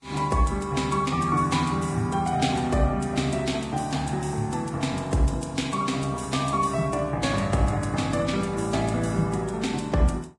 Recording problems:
codec artefacts; Vorbis, log-spectral distance 4 dB, nothing above 10.1 kHz

